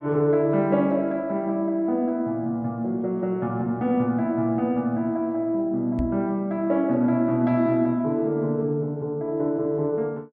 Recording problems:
microphone thump; at 6 s; peak 0 dB vs average level

